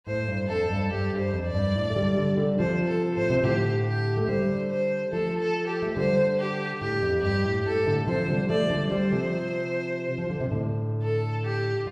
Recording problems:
none

